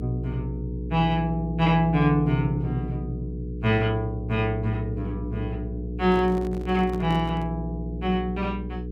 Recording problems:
hum; 60 Hz, harmonics up to 480 Hz, SNR 7 dB
handling noise; from 6 to 7.5 s; peak -7 dB vs average level

